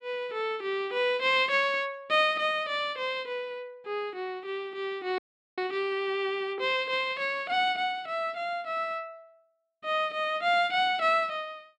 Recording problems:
dropout; at 5 s

